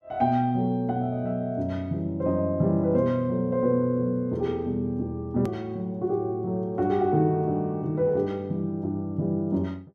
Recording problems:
click at an edit; at 5.5 s

